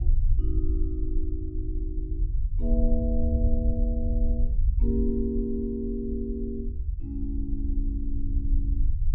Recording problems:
rumble; below 60 Hz, SNR -4 dB

